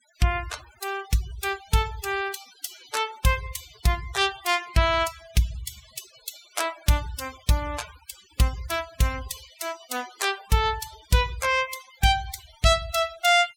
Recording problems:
denoising artefacts; signal-to-artefact ratio 16 dB

